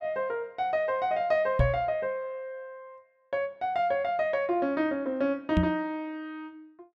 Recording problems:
microphone bump; at 1.5 s and at 5.5 s; peak +7 dB vs average level

